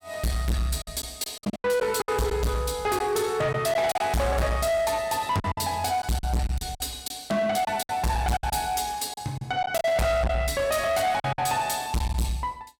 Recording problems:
distortion; soft clipping, signal-to-distortion ratio 6 dB
packet loss; 8% of the sound replaced, filled with silence

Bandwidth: 17 kHz